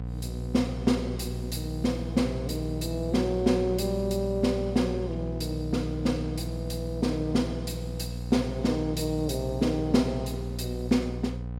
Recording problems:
hum; 60 Hz, harmonics up to 780 Hz, SNR 6 dB

